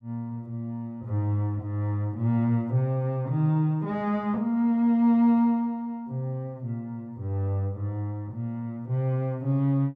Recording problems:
none

